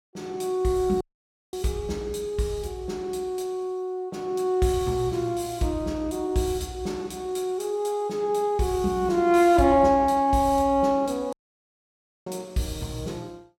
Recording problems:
dropout; at 1 s for 0.5 s and at 11 s for 1 s

